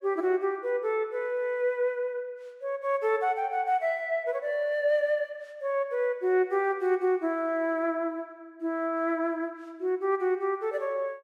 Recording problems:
none

